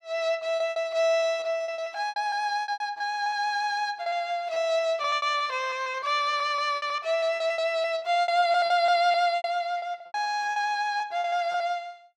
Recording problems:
packet loss; 16% of the sound replaced, filled with repeated pitch periods

